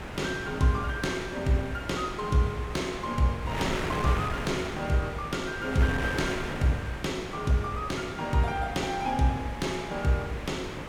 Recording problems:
wind noise; below 1.7 kHz, SNR 7 dB

